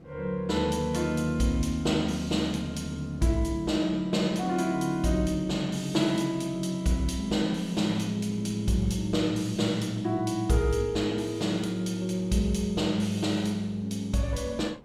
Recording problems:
wind noise; below 430 Hz, SNR 23 dB

